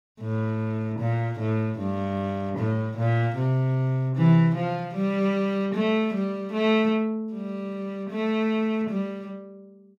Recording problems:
none

